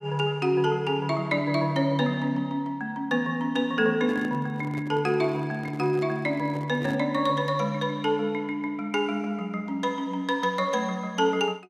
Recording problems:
handling noise; from 4 to 7 s; peak -8 dB vs average level

